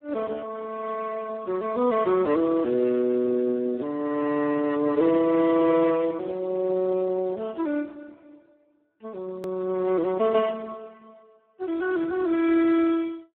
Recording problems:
phone line; 220 Hz to 2.7 kHz, Speex
click at an edit; at 9.5 s

